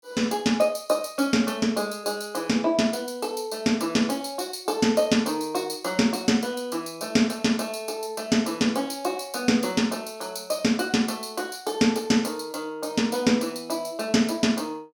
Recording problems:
none

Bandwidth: 17.5 kHz